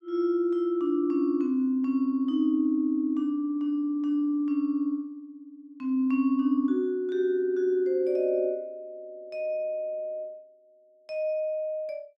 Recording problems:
none

